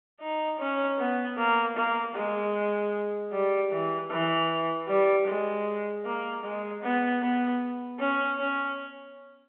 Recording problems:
telephone audio; 220 Hz to 3.4 kHz, G.711

